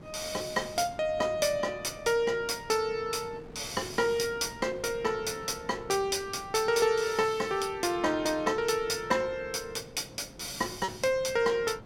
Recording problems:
wind noise; below 490 Hz, SNR 19 dB
lost packets; 0.3% of the sound replaced, filled with repeated pitch periods

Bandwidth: 17 kHz